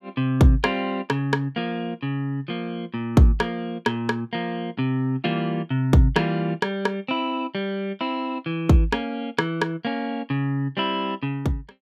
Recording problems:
none

